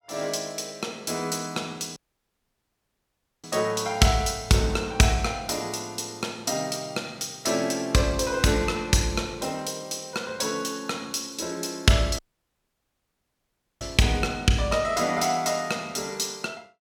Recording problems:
dropout; at 2 s for 1.5 s and at 12 s for 1.5 s

